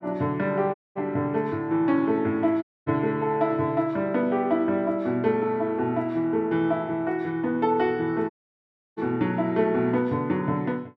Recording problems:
audio cutting out; at 0.5 s, at 2.5 s and at 8.5 s for 0.5 s

